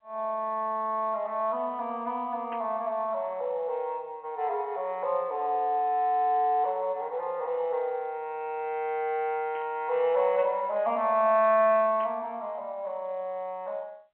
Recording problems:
telephone audio; 280 Hz to 3.3 kHz, G.711
static burst; at 2.5 s, at 9.5 s and at 12 s; peak -12 dB vs average level

